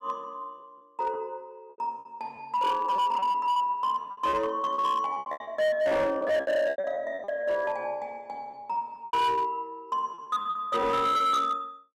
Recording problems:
distorted audio; hard clipping, signal-to-distortion ratio 11 dB
packet loss; 13% of the sound replaced, filled with repeated pitch periods

